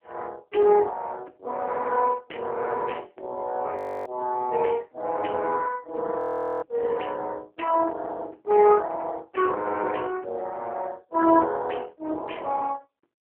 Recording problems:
phone line; 260 Hz to 3.1 kHz, AMR-NB
frozen audio; at 4 s and at 6 s

